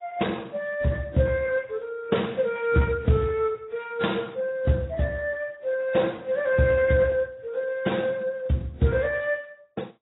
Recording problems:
lossy codec; Speex, then AAC, log-spectral distance 3 dB, nothing above 3.8 kHz

